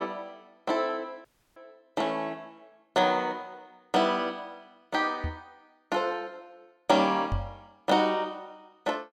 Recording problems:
audio cutting out; at 1.5 s
microphone thump; at 5 s and at 7.5 s; peak +1 dB vs average level

